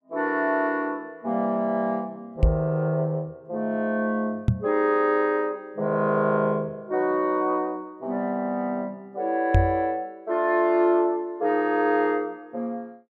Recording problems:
microphone thump; at 2.5 s, at 4.5 s and at 9.5 s; peak +8 dB vs average level

